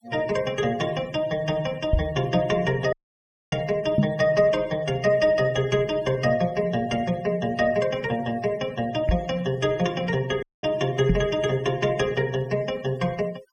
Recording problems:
denoising artefacts; signal-to-artefact ratio 21 dB
microphone thump; 4 times, first at 2 s; peak +8 dB vs average level
dropout; at 3 s for 0.5 s and at 10 s

